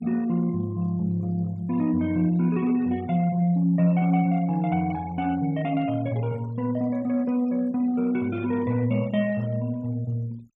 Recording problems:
denoising artefacts; signal-to-artefact ratio 25 dB

